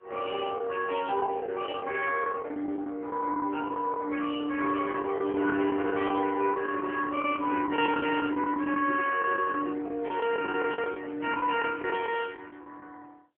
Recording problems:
telephone audio; 260 Hz to 2.9 kHz, AMR-NB
lost packets; 11% of the sound replaced, filled with the last packet

